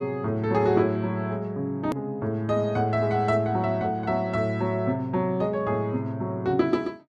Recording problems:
hard cut with a click; at 2 s

